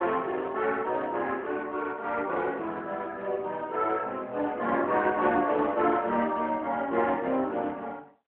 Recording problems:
telephone audio; 170 Hz to 3.3 kHz, AMR-NB

